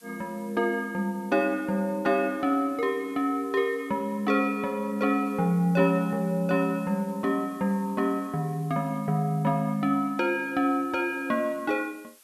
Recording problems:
hiss; slope +2 dB per octave, SNR 27 dB

